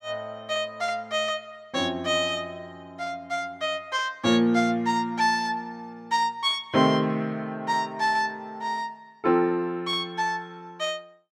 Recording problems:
none

